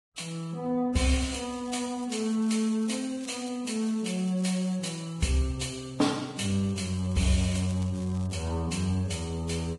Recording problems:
lossy codec; Vorbis, log-spectral distance 4 dB, nothing above 11 kHz
crackle; from 1.5 to 3.5 s, at 4 s and from 6.5 to 8.5 s; loose cable, SNR 22 dB

